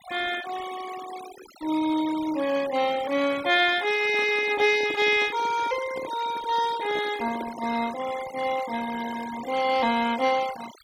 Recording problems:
denoising artefacts; signal-to-artefact ratio 15 dB
microphone handling noise; from 4 to 8 s; peak -7 dB vs average level

